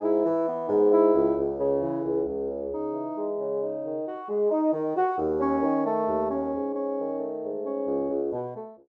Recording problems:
none

